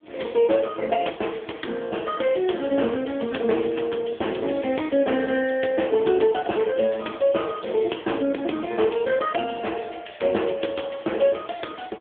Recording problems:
phone line; 240 Hz to 3.5 kHz, AMR-NB

